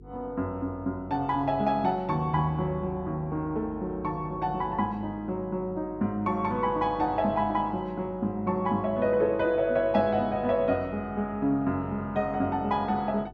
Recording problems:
hum; 50 Hz, harmonics up to 450 Hz, SNR 20 dB

